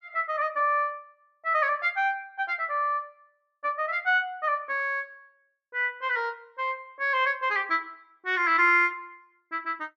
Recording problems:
none

